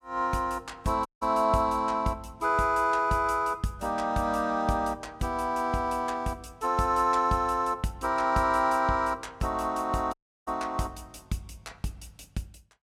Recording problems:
audio cutting out; at 1 s and at 10 s

